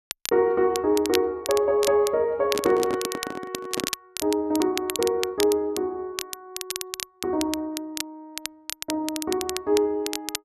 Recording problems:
crackle; vinyl, SNR 8 dB
microphone handling noise; from 2.5 to 4 s; peak -1 dB vs average level

